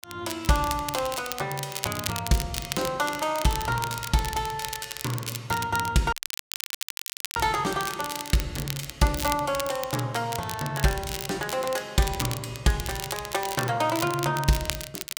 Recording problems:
crackle; vinyl, SNR 7 dB
dropout; at 6 s for 1 s

